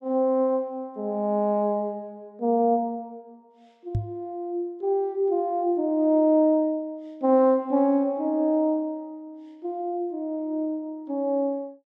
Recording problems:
microphone bump; at 4 s; peak +1 dB vs average level

